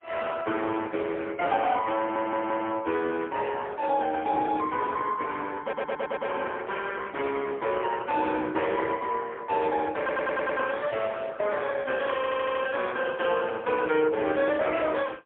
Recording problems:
telephone audio; 280 Hz to 3.4 kHz, AMR-NB, then MP3
audio stuttering; 4 times, first at 2 s

